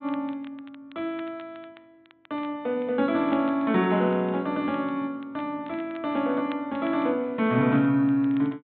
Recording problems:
treble cut off; nothing above 4 kHz
crackle; vinyl, SNR 28 dB

